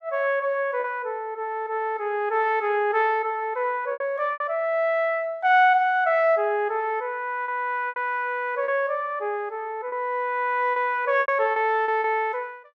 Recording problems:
lost packets; 5% of the sound replaced, filled with repeated pitch periods

